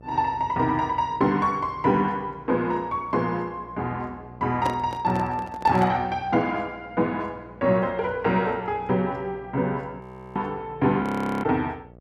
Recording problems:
electrical hum; 60 Hz, harmonics up to 1.2 kHz, SNR 23 dB
microphone handling noise; from 4.5 to 6 s; peak 0 dB vs average level
frozen audio; at 10 s and at 11 s

